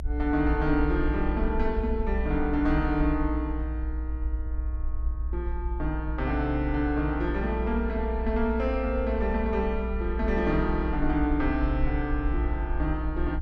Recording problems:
rumble; below 60 Hz, strongest tone 58 Hz, SNR 3 dB

